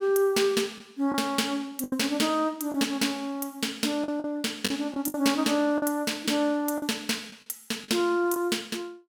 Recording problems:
lost packets; 6% of the sound replaced, filled with the last packet

